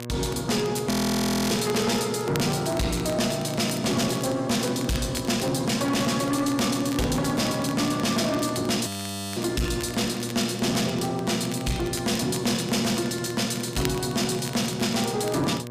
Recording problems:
distorted audio; soft clipping, signal-to-distortion ratio 6 dB
electrical hum; 60 Hz, harmonics up to 1.7 kHz, SNR 11 dB
crackle; vinyl, SNR 16 dB
frozen audio; at 1 s for 0.5 s and at 9 s

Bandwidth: 15 kHz